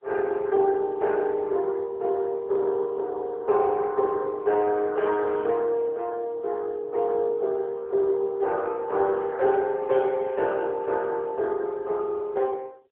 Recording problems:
phone line; 340 Hz to 2.6 kHz, AMR-NB

